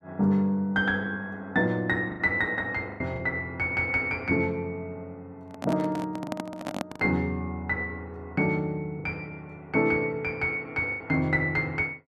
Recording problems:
packet loss; 4% of the sound replaced, filled with the last packet
handling noise; from 5.5 to 7 s; peak -1 dB vs average level

